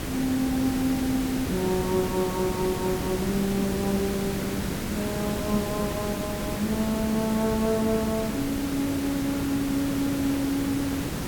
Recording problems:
background hiss; SNR 3 dB

